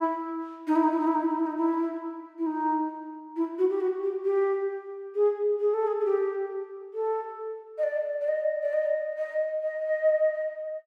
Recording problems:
none

